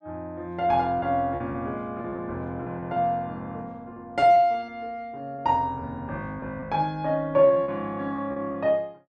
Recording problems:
lost packets; 6% of the sound replaced, filled with repeated pitch periods

